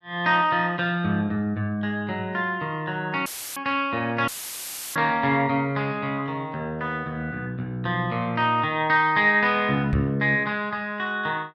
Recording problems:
dropout; at 3.5 s and at 4.5 s for 0.5 s; filled with static
microphone thump; at 10 s; peak +2 dB vs average level

